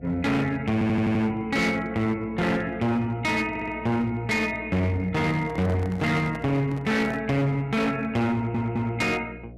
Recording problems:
distorted audio; hard clipping, signal-to-distortion ratio 7 dB
hum; 60 Hz, harmonics up to 720 Hz, SNR 20 dB
stutter; at 0.5 s, at 3.5 s and at 8.5 s
handling noise; from 5 to 7 s; peak -9 dB vs average level

